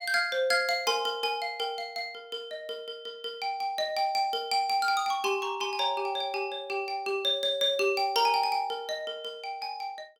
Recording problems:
none

